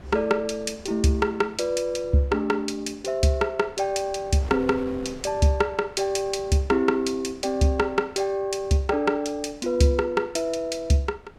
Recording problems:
wind on the microphone; below 650 Hz, SNR 22 dB

